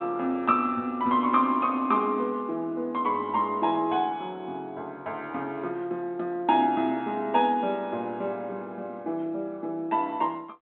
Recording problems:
phone line; 170 Hz to 3.8 kHz, G.726

